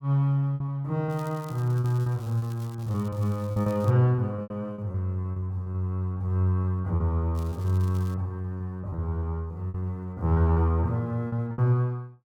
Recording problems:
lost packets; 11% of the sound replaced, filled with repeated pitch periods
crackling; from 1 to 4 s and at 7.5 s; loose cable, SNR 25 dB

